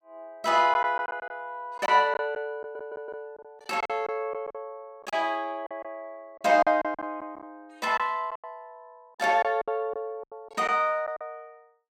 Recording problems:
lost packets; 10% of the sound replaced, filled with silence
audio stuttering; at 2.5 s

